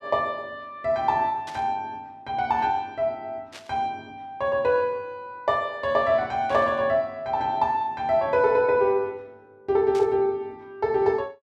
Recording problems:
static burst; 4 times, first at 1.5 s; peak -12 dB vs average level

